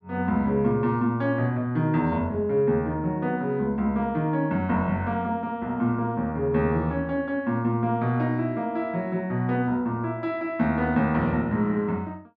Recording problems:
none

